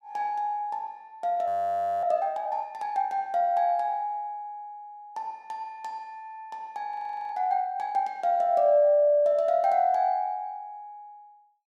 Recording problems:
audio freezing; at 1.5 s for 0.5 s and at 7 s

